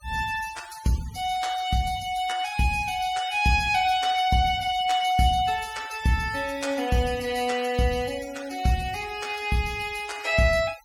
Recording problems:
denoising artefacts; signal-to-artefact ratio 17 dB

